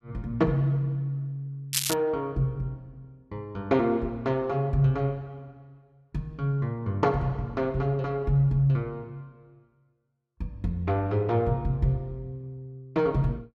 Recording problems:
crackling; at 1.5 s; loose cable, SNR 2 dB

